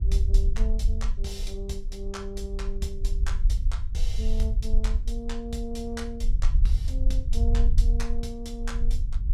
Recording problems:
rumble; below 52 Hz, strongest tone 24 Hz, SNR -8 dB

